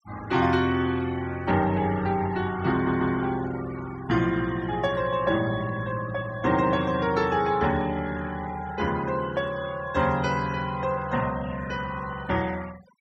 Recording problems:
denoising artefacts; signal-to-artefact ratio 18 dB
stutter; at 2.5 s

